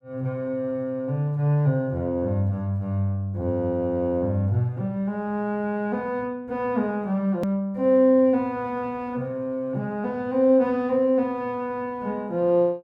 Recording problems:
click at an edit; at 7.5 s

